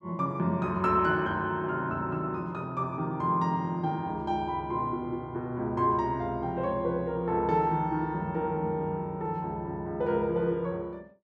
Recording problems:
none

